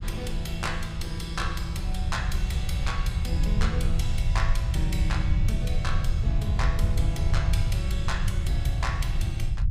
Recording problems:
rumble; below 88 Hz, SNR -5 dB

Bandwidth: 15.5 kHz